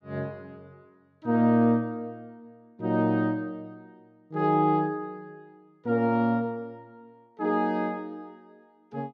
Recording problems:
none

